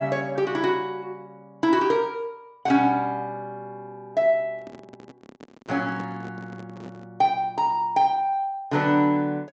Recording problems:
low-pass filter; nothing above 8 kHz
microphone handling noise; from 4.5 to 7 s; peak -11 dB vs average level

